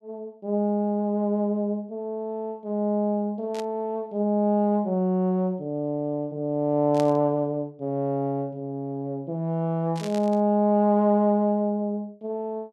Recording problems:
static burst; at 3.5 s, at 7 s and at 10 s; peak -8 dB vs average level

